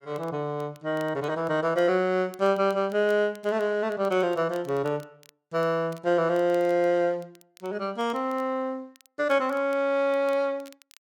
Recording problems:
crackling; vinyl, SNR 29 dB

